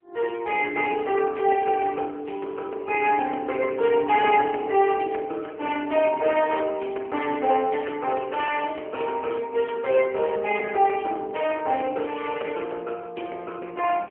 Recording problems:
phone line; 300 Hz to 3.1 kHz, AMR-NB

